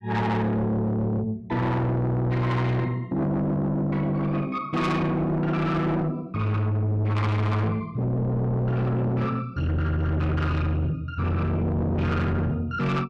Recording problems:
distorted audio; soft clipping, signal-to-distortion ratio 7 dB

